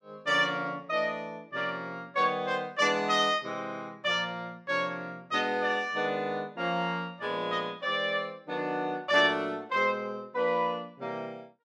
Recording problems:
none

